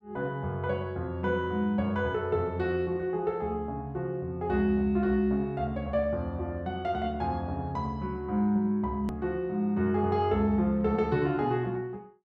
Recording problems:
hard cut with a click; at 9 s

